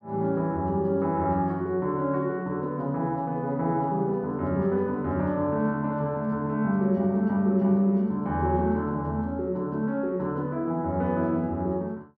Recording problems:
none

